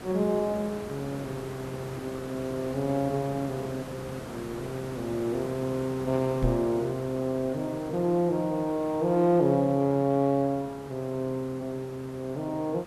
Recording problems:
background hiss; slope -6 dB per octave, SNR 13 dB
knock on the microphone; at 6.5 s; peak +5 dB vs average level

